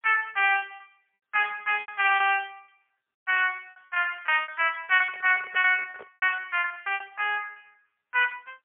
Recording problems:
telephone audio; 370 Hz to 3.3 kHz, AMR-NB, then MP3
packet loss; 15% of the sound replaced, filled with repeated pitch periods
microphone handling noise; from 4.5 to 6 s; peak -15 dB vs average level

